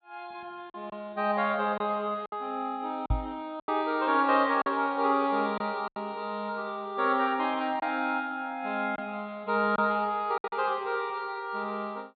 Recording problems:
treble missing; nothing above 4.4 kHz
lost packets; 5% of the sound replaced, filled with silence
knock on the microphone; at 3 s; peak +4 dB vs average level

